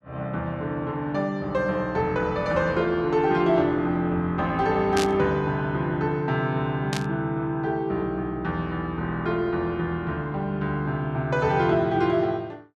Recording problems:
static burst; at 5 s and at 7 s; peak -1 dB vs average level

